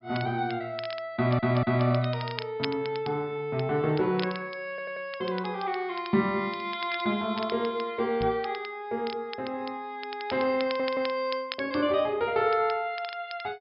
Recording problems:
low-pass filter; nothing above 5.2 kHz
crackle; vinyl, SNR 14 dB
audio stuttering; at 1 s, at 4.5 s and at 11 s
microphone bump; at 8 s; peak -4 dB vs average level

